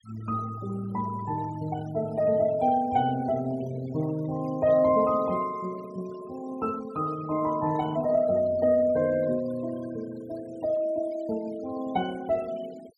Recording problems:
denoising artefacts; signal-to-artefact ratio 21 dB

